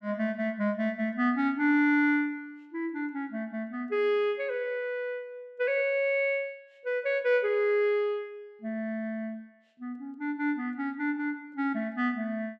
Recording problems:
none

